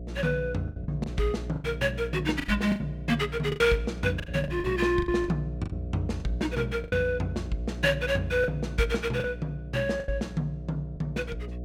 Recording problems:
hum; 60 Hz, harmonics up to 660 Hz, SNR 9 dB
packet loss; 10% of the sound replaced, filled with the last packet

